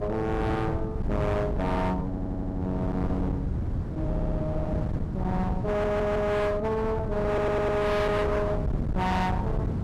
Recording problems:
distortion; hard clipping, uneven, signal-to-distortion ratio 7 dB
wind on the microphone; below 240 Hz, SNR 3 dB
stutter; 4 times, first at 2 s

